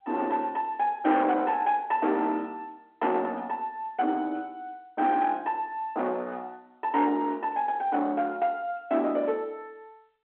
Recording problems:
telephone audio; 260 Hz to 3.7 kHz, G.711
distortion; soft clipping, signal-to-distortion ratio 13 dB

